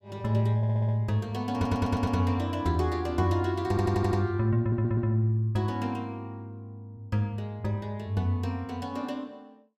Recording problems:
audio stuttering; 4 times, first at 0.5 s

